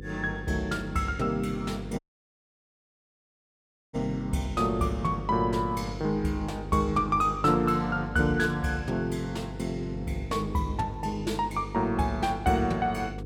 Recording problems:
hum; 50 Hz, harmonics up to 500 Hz, SNR 11 dB
dropout; at 2 s for 2 s

